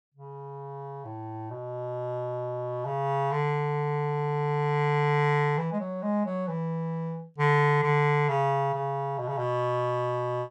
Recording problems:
none

